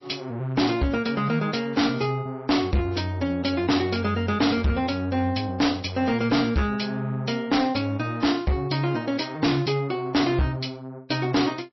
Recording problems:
lossy codec; MP3, log-spectral distance 4 dB, nothing above 5.7 kHz
distorted audio; hard clipping, signal-to-distortion ratio 6 dB

